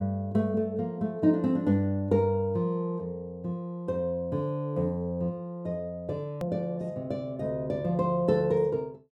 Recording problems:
click at an edit; at 6.5 s

